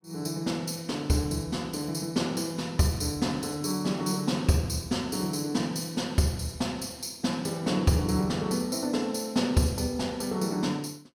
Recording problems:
none

